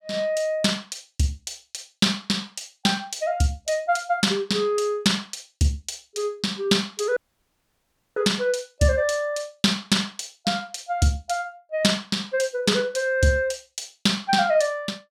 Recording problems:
audio cutting out; at 7 s for 1 s

